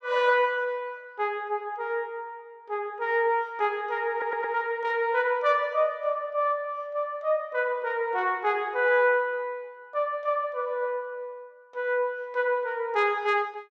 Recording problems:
audio stuttering; at 4 s

